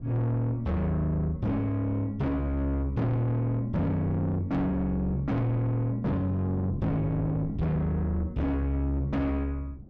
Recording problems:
distortion; soft clipping, signal-to-distortion ratio 8 dB
wind on the microphone; below 230 Hz, SNR 15 dB

